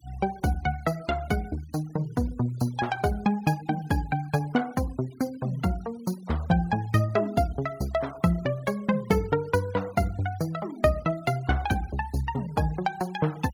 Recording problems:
denoising artefacts; signal-to-artefact ratio 23 dB

